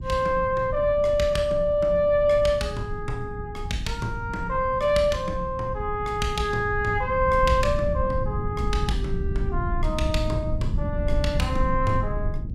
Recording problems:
low-frequency rumble; below 110 Hz, SNR 6 dB

